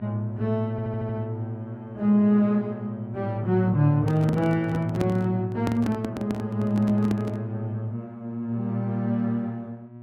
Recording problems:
hum; 60 Hz, harmonics up to 960 Hz, SNR 14 dB
audio stuttering; at 0.5 s
handling noise; from 4 to 7.5 s; peak +1 dB vs average level

